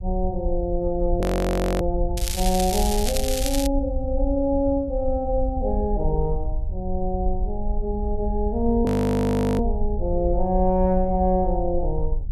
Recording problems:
low-frequency rumble; below 58 Hz, SNR 5 dB
audio freezing; at 1 s for 0.5 s and at 9 s for 0.5 s
crackling; from 2 to 3.5 s; loose cable, SNR 5 dB

